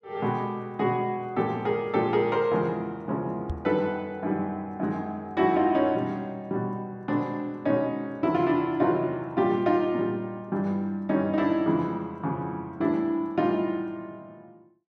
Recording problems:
microphone thump; at 3.5 s; peak -1 dB vs average level

